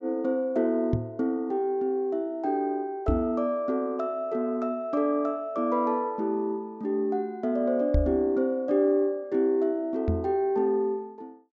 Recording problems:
low-pass filter; nothing above 8 kHz
microphone thump; 4 times, first at 1 s; peak +5 dB vs average level

